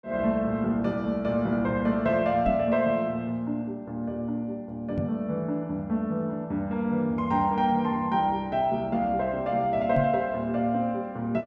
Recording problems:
microphone thump; at 2.5 s, at 5 s and at 10 s; peak +1 dB vs average level

